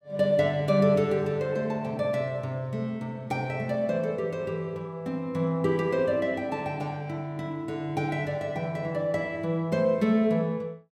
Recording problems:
none

